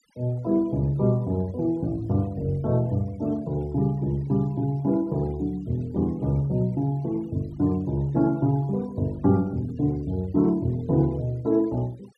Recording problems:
noise reduction artefacts; signal-to-artefact ratio 28 dB

